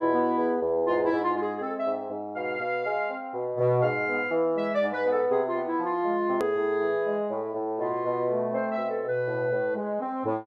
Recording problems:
edit click; at 6.5 s

